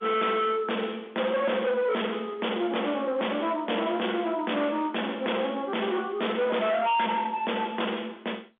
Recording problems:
phone line; 260 Hz to 3.6 kHz, G.711
distorted audio; hard clipping, uneven, signal-to-distortion ratio 6 dB

